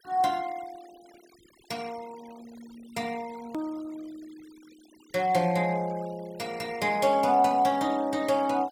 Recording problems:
noise reduction artefacts; signal-to-artefact ratio 24 dB
edit click; at 3.5 s

